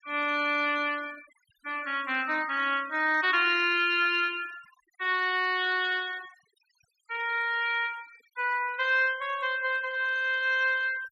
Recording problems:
noise reduction artefacts; signal-to-artefact ratio 22 dB

